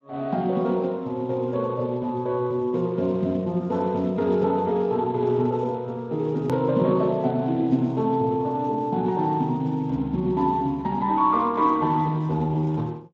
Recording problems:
lossy codec; Speex, log-spectral distance 2 dB, nothing above 13.1 kHz
click at an edit; at 6.5 s

